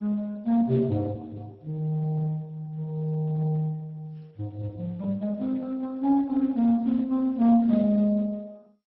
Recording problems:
codec artefacts; Speex, then MP2, log-spectral distance 2 dB, nothing above 4.8 kHz

